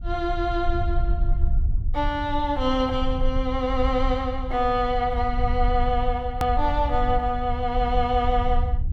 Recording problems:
rumble; below 62 Hz, SNR 4 dB
click at an edit; at 6.5 s

